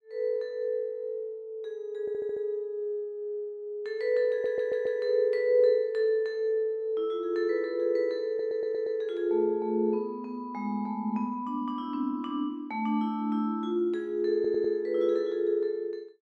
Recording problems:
audio stuttering; 4 times, first at 2 s

